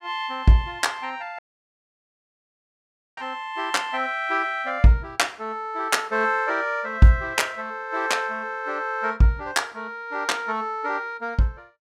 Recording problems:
dropout; at 1.5 s for 2 s

